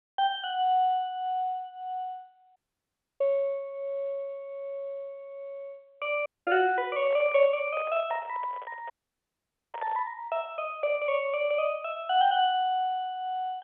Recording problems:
telephone audio; 320 Hz to 3.4 kHz, G.711
audio cutting out; at 2.5 s for 0.5 s, at 6.5 s and at 9 s for 1 s
microphone handling noise; from 7 to 10 s; peak -7 dB vs average level

